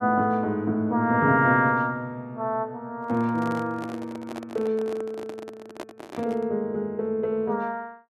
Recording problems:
handling noise; from 3 to 6.5 s; peak -6 dB vs average level

